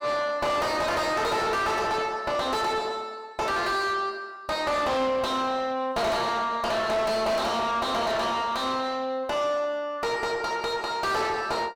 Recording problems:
distortion; soft clipping, signal-to-distortion ratio 5 dB

